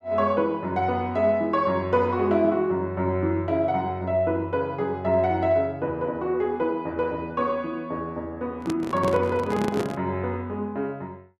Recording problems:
microphone handling noise; from 8.5 to 10 s; peak 0 dB vs average level

